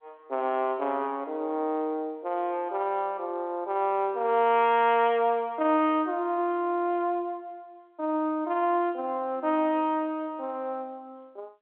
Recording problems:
phone line; 240 Hz to 3.5 kHz, G.711

